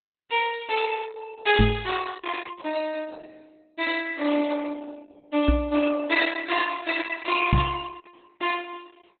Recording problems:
codec artefacts; Opus, log-spectral distance 5 dB, nothing above 4 kHz
microphone bump; at 1.5 s, at 5.5 s and at 7.5 s; peak +9 dB vs average level

